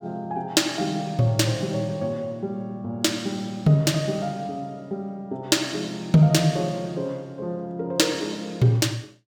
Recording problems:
none

